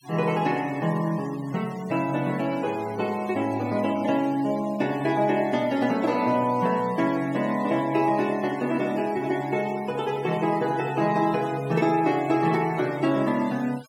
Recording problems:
denoising artefacts; signal-to-artefact ratio 19 dB

